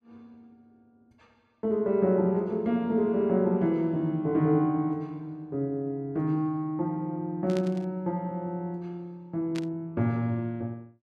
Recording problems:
static burst; at 7.5 s and at 9.5 s; peak -8 dB vs average level

